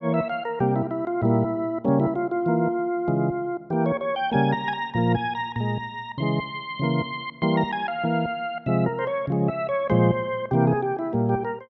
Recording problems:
none

